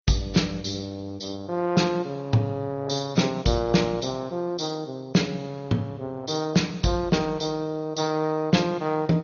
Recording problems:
codec artefacts; AAC, then MP2, log-spectral distance 4 dB, nothing above 6.3 kHz

